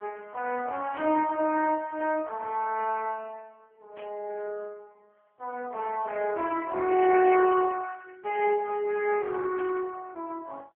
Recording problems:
phone line; 260 Hz to 2.9 kHz, AMR-NB
burst of static; 4 times, first at 1 s; peak -14 dB vs average level

